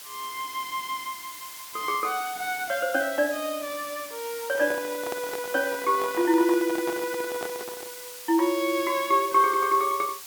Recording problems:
hiss; slope +2 dB per octave, SNR 12 dB
handling noise; from 4.5 to 8 s; peak -5 dB vs average level

